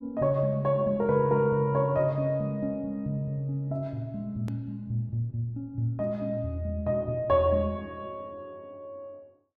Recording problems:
hard cut with a click; at 4.5 s

